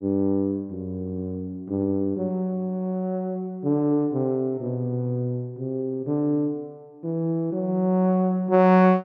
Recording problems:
none

